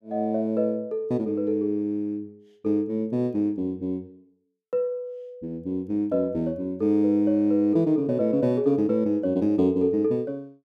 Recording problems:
none

